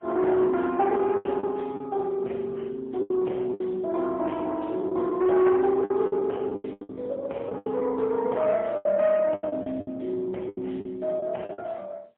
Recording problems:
phone line; 280 Hz to 3.6 kHz, AMR-NB, then MP3
distorted audio; soft clipping, signal-to-distortion ratio 11 dB
packet loss; 11% of the sound replaced, filled with the last packet

